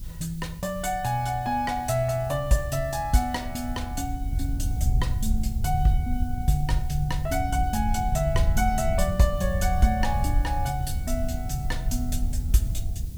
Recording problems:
hiss; slope +3 dB per octave, SNR 22 dB
wind noise; below 82 Hz, SNR 2 dB

